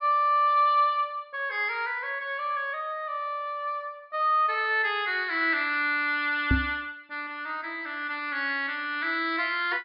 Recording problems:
low-pass filter; nothing above 5.5 kHz
microphone bump; at 6.5 s; peak +6 dB vs average level

